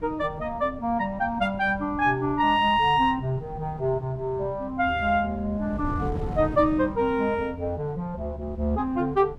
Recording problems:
wind on the microphone; below 210 Hz, SNR 14 dB

